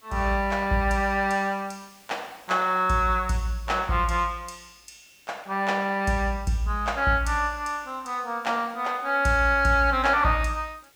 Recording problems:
background hiss; SNR 29 dB

